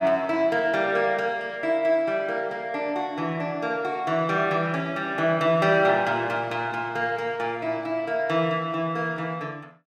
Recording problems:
none

